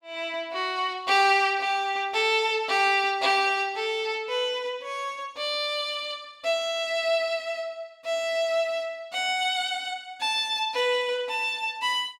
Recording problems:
none

